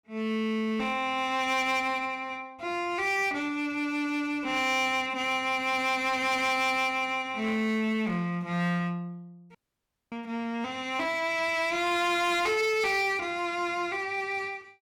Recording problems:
distortion; hard clipping, uneven, signal-to-distortion ratio 10 dB
dropout; at 9.5 s for 0.5 s

